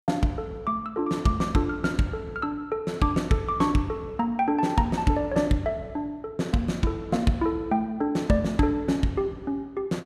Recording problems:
none

